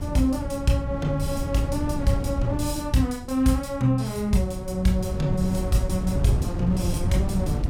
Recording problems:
wind on the microphone; below 150 Hz, SNR 5 dB

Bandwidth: 16.5 kHz